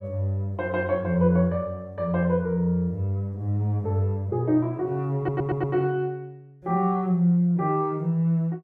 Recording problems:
audio stuttering; at 5 s

